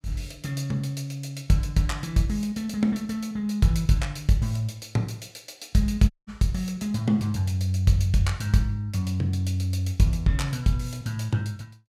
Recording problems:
audio cutting out; at 6 s

